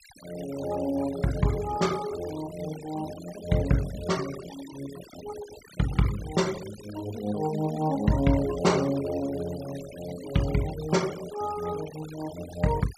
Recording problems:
denoising artefacts; signal-to-artefact ratio 15 dB

